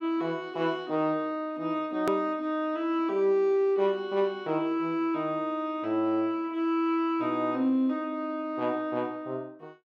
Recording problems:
edit click; at 2 s

